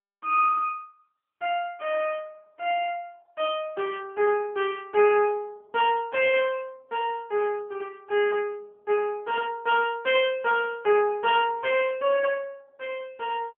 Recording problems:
telephone audio; 190 Hz to 3.3 kHz, AMR-NB

